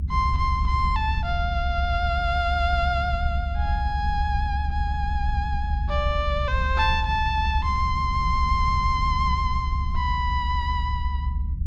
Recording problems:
low-frequency rumble; below 72 Hz, SNR 1 dB

